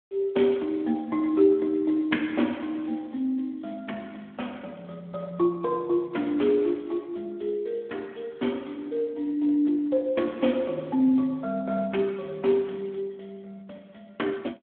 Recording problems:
telephone audio; 190 Hz to 3.3 kHz, Speex

